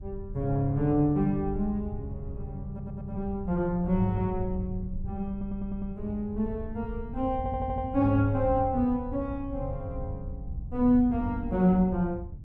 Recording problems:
wind on the microphone; below 96 Hz, SNR 10 dB
audio stuttering; at 2.5 s, at 5.5 s and at 7.5 s

